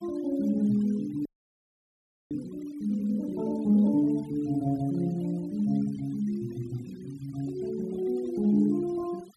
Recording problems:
noise reduction artefacts; signal-to-artefact ratio 26 dB
frozen audio; at 1.5 s for 1 s

